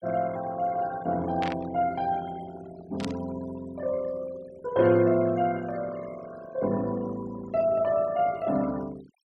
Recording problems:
denoising artefacts; signal-to-artefact ratio 19 dB
burst of static; at 1.5 s and at 3 s; peak -4 dB vs average level

